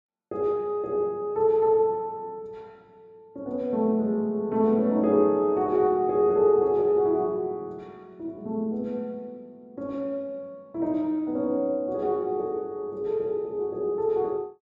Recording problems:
none

